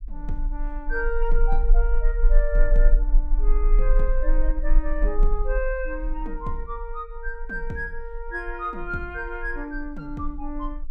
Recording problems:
low-frequency rumble; below 36 Hz, strongest tone 28 Hz, SNR -6 dB

